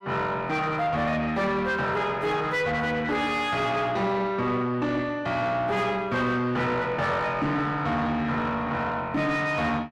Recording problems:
distortion; soft clipping, signal-to-distortion ratio 10 dB

